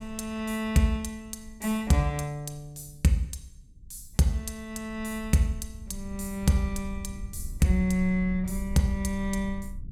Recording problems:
rumble; below 70 Hz, SNR 14 dB

